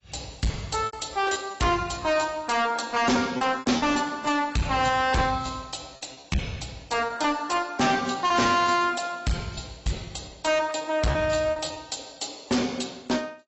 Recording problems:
codec artefacts; AAC, log-spectral distance 6 dB, nothing above 7.8 kHz
distortion; hard clipping, signal-to-distortion ratio 6 dB
packet loss; 9% of the sound replaced, filled with repeated pitch periods

